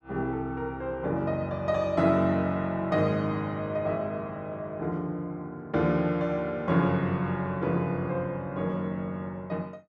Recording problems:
none

